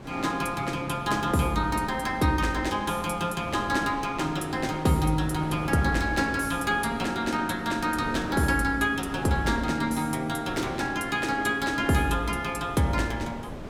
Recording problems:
wind on the microphone; below 610 Hz, SNR 13 dB

